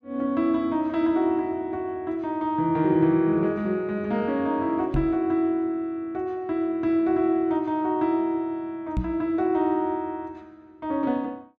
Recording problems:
microphone thump; at 5 s and at 9 s; peak +2 dB vs average level

